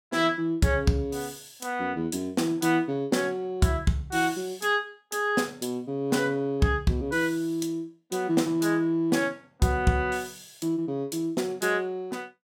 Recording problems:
none

